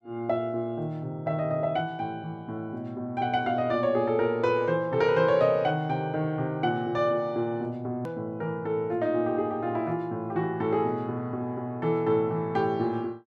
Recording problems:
edit click; at 8 s

